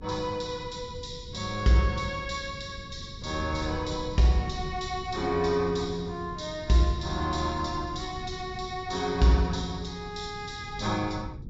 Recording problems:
low-pass filter; nothing above 7.4 kHz
electrical hum; 50 Hz, harmonics up to 450 Hz, SNR 25 dB
wind noise; below 160 Hz, SNR 14 dB

